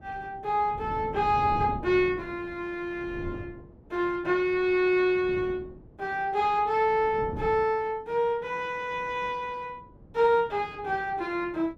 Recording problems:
wind on the microphone; below 300 Hz, SNR 16 dB

